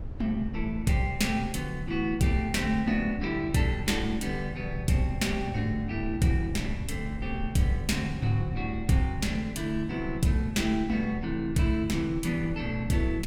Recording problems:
mains hum; 60 Hz, harmonics up to 660 Hz, SNR 28 dB
rumble; below 88 Hz, SNR 11 dB

